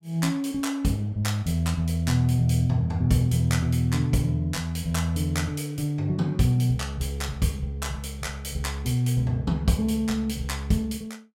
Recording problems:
none

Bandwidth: 16 kHz